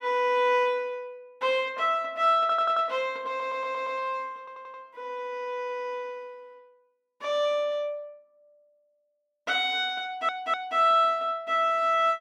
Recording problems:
audio stuttering; 4 times, first at 2.5 s

